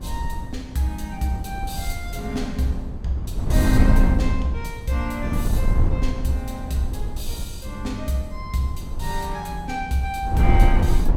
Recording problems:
wind on the microphone; below 90 Hz, SNR -2 dB

